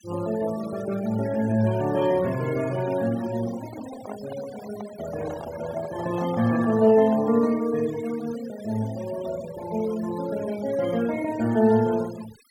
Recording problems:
noise reduction artefacts; signal-to-artefact ratio 18 dB
handling noise; from 3.5 to 7.5 s; peak -10 dB vs average level

